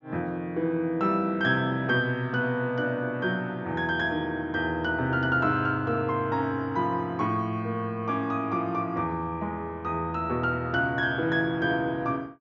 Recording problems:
treble missing; nothing above 7 kHz

